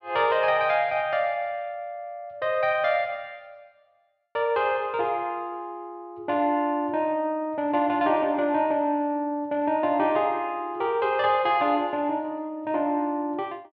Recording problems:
none

